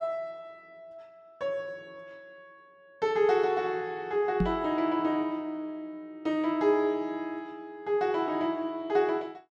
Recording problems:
microphone bump; at 4.5 s; peak +5 dB vs average level

